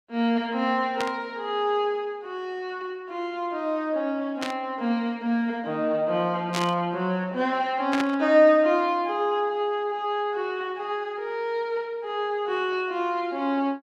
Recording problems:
static burst; 4 times, first at 1 s; peak 0 dB vs average level

